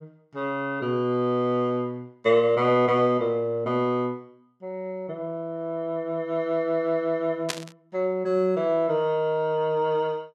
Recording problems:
burst of static; at 7.5 s; peak +1 dB vs average level

